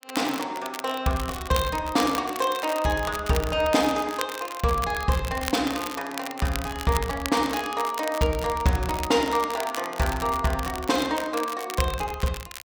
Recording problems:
crackle; vinyl, SNR 11 dB

